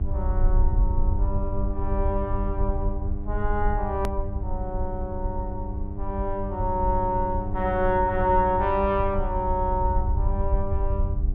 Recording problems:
treble cut off; nothing above 8 kHz
electrical hum; 50 Hz, harmonics up to 800 Hz, SNR 9 dB
rumble; below 66 Hz, SNR 2 dB
hard cut with a click; at 4 s

